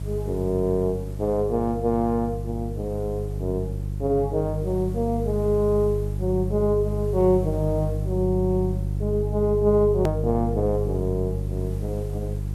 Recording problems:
hum; 50 Hz, harmonics up to 350 Hz, SNR 4 dB
hiss; slope -4 dB per octave, SNR 26 dB
click at an edit; at 10 s

